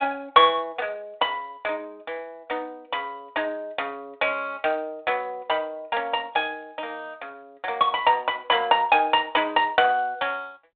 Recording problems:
phone line; 260 Hz to 3.7 kHz, G.726

